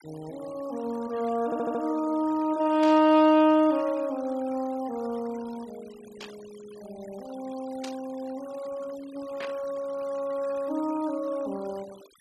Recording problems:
denoising artefacts; signal-to-artefact ratio 23 dB
audio stuttering; at 1.5 s
burst of static; 4 times, first at 3 s; peak -7 dB vs average level

